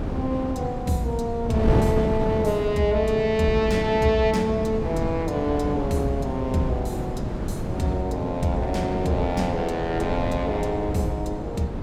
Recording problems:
wind noise; below 330 Hz, SNR 5 dB

